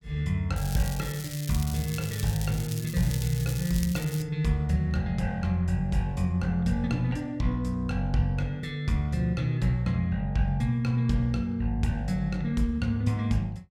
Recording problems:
crackling; from 0.5 to 4 s; loose cable, SNR 11 dB

